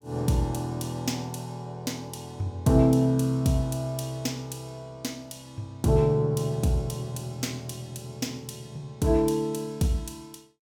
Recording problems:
none

